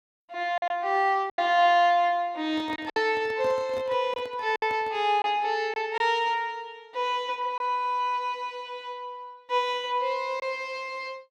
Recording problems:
lost packets; 4% of the sound replaced, filled with silence
microphone handling noise; from 2.5 to 5 s; peak -11 dB vs average level

